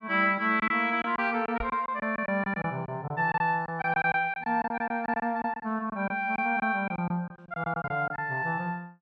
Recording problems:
lost packets; 12% of the sound replaced, filled with silence
microphone bump; at 1.5 s; peak -7 dB vs average level

